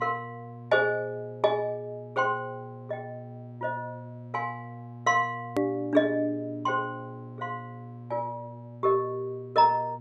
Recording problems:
mains hum; 60 Hz, harmonics up to 600 Hz, SNR 15 dB
click at an edit; at 5.5 s

